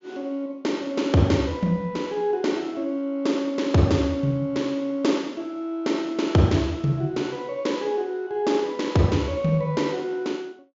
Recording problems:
treble missing; nothing above 7.4 kHz

